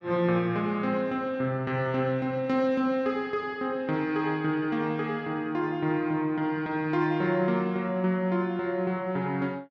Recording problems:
none

